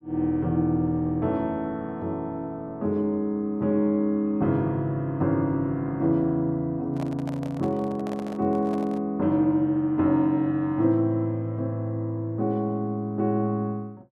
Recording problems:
handling noise; from 7 to 9 s; peak -8 dB vs average level

